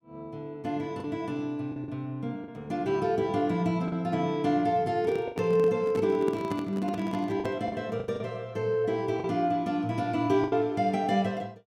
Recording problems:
lost packets; 5% of the sound replaced, filled with the last packet
handling noise; from 5 to 7.5 s; peak 0 dB vs average level

